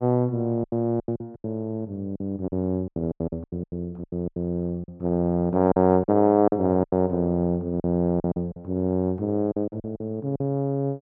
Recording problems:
packet loss; 14% of the sound replaced, filled with silence

